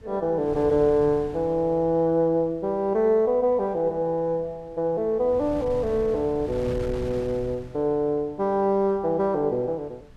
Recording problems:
wind on the microphone; below 220 Hz, SNR 18 dB

